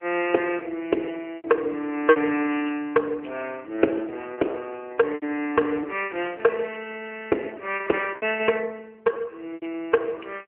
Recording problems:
telephone audio; 260 Hz to 3 kHz, AMR-NB
lost packets; 6% of the sound replaced, filled with repeated pitch periods

